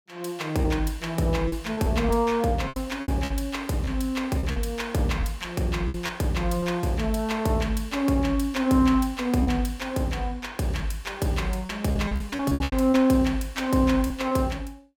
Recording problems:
lost packets; 7% of the sound replaced, filled with repeated pitch periods

